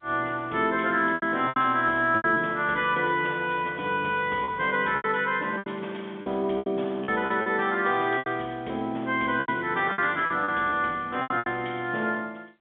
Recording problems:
telephone audio; 240 Hz to 3.5 kHz, G.711
lost packets; 10% of the sound replaced, filled with repeated pitch periods

